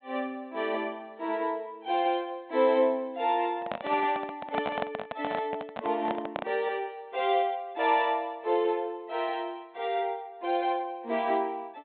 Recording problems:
low-pass filter; nothing above 4 kHz
microphone handling noise; from 3.5 to 6.5 s; peak +2 dB vs average level

